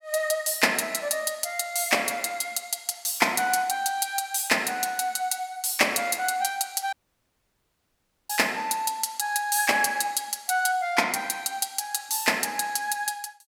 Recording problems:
audio cutting out; at 7 s for 1.5 s

